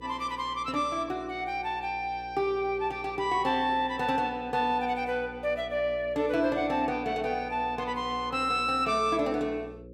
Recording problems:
electrical hum; 60 Hz, harmonics up to 540 Hz, SNR 19 dB

